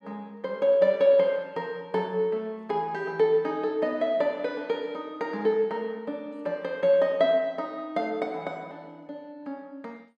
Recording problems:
none

